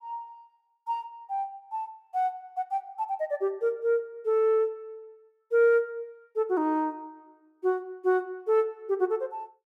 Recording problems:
none

